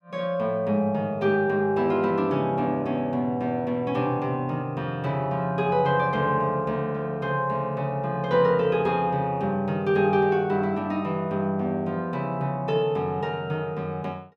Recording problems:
none

